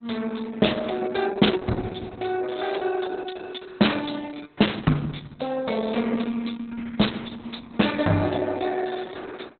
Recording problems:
codec artefacts; Opus, log-spectral distance 8 dB, nothing above 4 kHz

